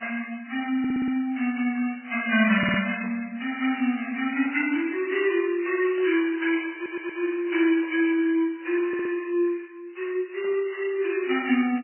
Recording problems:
codec artefacts; MP3, log-spectral distance 4 dB, nothing above 2.9 kHz
stutter; 4 times, first at 1 s
static burst; 4 times, first at 3 s; peak -13 dB vs average level

